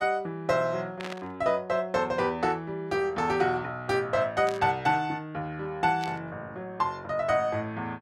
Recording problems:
burst of static; at 1 s, at 4.5 s and at 6 s; peak -5 dB vs average level

